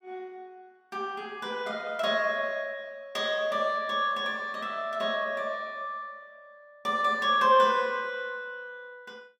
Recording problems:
none

